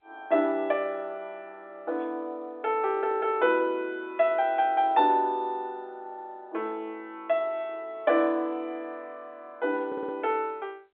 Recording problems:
phone line; 260 Hz to 4 kHz, G.711
audio stuttering; at 10 s

